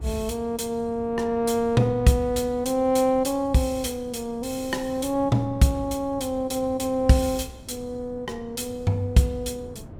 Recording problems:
wind noise; below 290 Hz, SNR 19 dB

